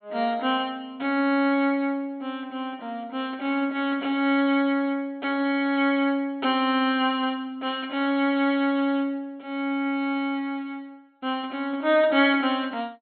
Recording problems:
treble missing; nothing above 4.2 kHz

